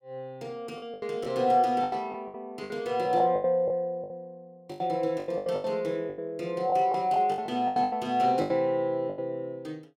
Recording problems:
packet loss; 15% of the sound replaced, filled with the last packet

